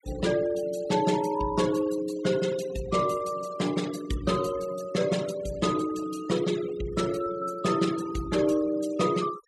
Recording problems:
denoising artefacts; signal-to-artefact ratio 16 dB

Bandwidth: 15 kHz